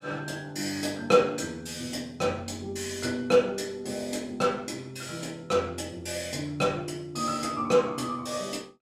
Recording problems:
none

